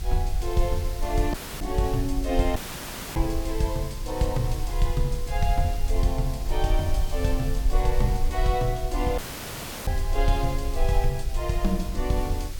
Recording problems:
hiss; SNR 14 dB
low-frequency rumble; below 44 Hz, SNR 3 dB
dropout; at 1.5 s, at 2.5 s for 0.5 s and at 9 s for 0.5 s

